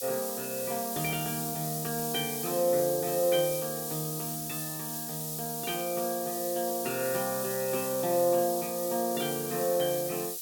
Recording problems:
lossy codec; Opus, log-spectral distance 2 dB
background hiss; SNR 3 dB

